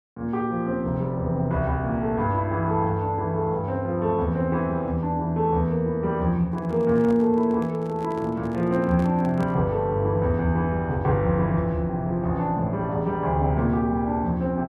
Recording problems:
handling noise; from 6.5 to 9.5 s; peak -10 dB vs average level

